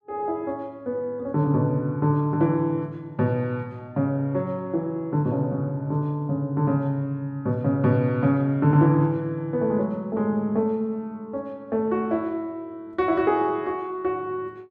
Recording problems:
none

